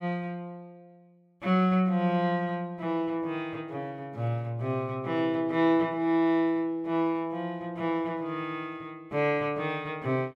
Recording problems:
none

